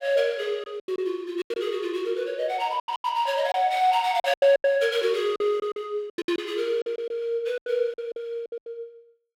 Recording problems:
lost packets; 14% of the sound replaced, filled with silence

